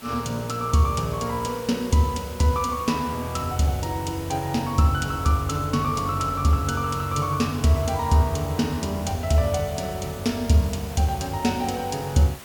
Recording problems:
background hiss; slope -3 dB per octave, SNR 17 dB

